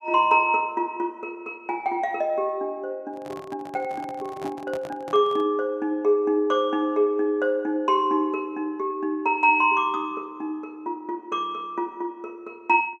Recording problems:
microphone handling noise; from 3 to 5.5 s; peak -9 dB vs average level

